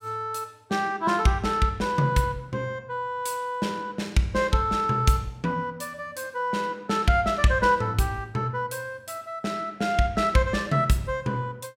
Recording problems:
none

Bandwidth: 16 kHz